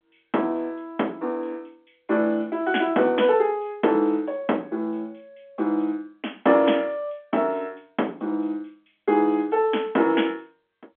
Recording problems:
phone line; 220 Hz to 3.4 kHz, G.711

